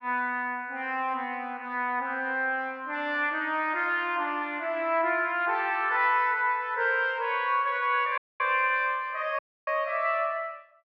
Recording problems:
dropout; at 8 s and at 9.5 s

